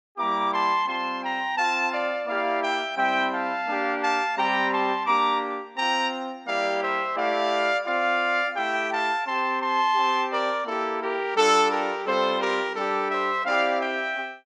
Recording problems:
none

